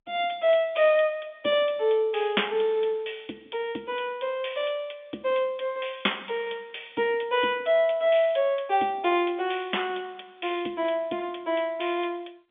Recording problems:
phone line; 260 Hz to 3.6 kHz, G.711

